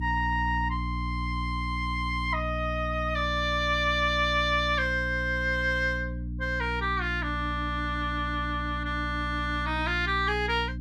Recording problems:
electrical hum; 60 Hz, harmonics up to 300 Hz, SNR 6 dB

